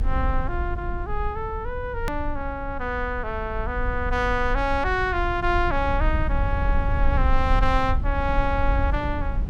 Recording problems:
low-frequency rumble; below 66 Hz, SNR 2 dB
hard cut with a click; at 2 s

